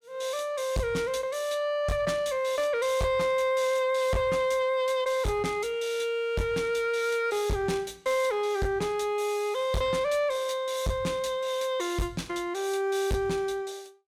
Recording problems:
distortion; soft clipping, signal-to-distortion ratio 11 dB

